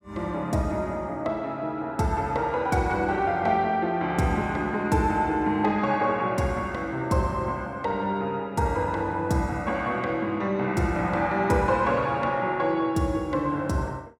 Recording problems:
none

